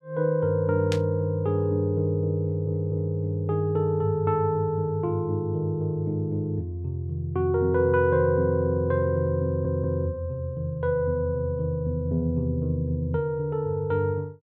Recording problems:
burst of static; at 1 s; peak -3 dB vs average level
stutter; at 2.5 s and at 9.5 s

